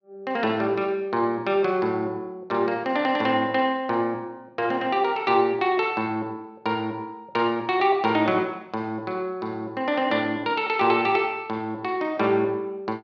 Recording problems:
none

